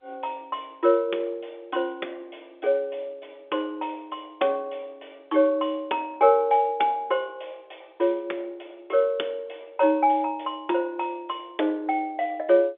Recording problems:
telephone audio; 260 Hz to 3.6 kHz, G.711

